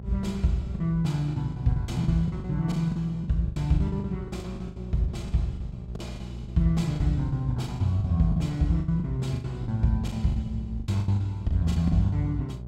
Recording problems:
hum; 60 Hz, harmonics up to 600 Hz, SNR 12 dB
packet loss; 17% of the sound replaced, filled with the last packet

